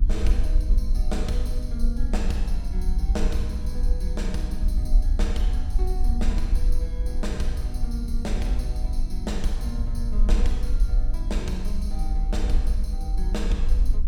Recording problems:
hum; 50 Hz, harmonics up to 300 Hz, SNR 5 dB
low-frequency rumble; below 48 Hz, SNR -7 dB
wind noise; below 240 Hz, SNR 20 dB

